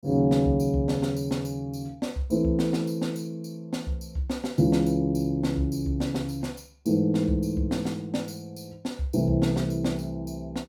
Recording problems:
none

